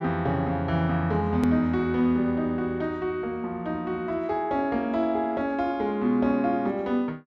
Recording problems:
click at an edit; at 1.5 s

